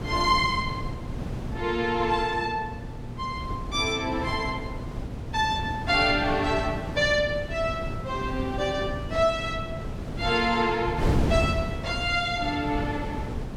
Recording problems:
electrical hum; 60 Hz, harmonics up to 840 Hz, SNR 19 dB
wind noise; below 300 Hz, SNR 7 dB

